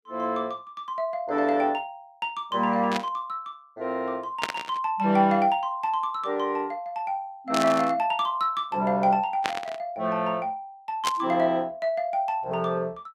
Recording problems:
static burst; 5 times, first at 3 s; peak +3 dB vs average level

